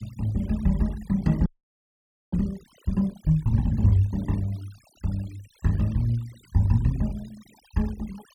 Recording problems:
noise reduction artefacts; signal-to-artefact ratio 25 dB
audio freezing; at 1.5 s for 1 s

